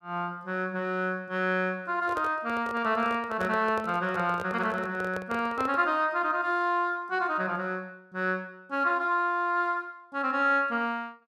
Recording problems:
microphone handling noise; from 2 to 6 s; peak -4 dB vs average level

